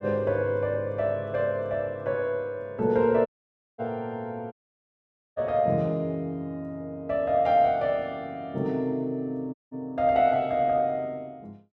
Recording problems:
dropout; at 3.5 s for 0.5 s, at 4.5 s for 1 s and at 9.5 s

